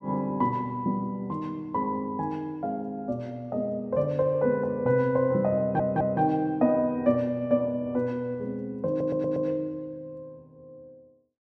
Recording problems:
stutter; at 5.5 s and at 9 s

